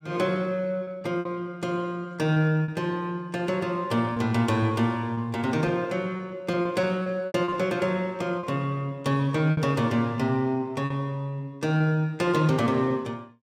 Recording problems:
packet loss; 6% of the sound replaced, filled with repeated pitch periods

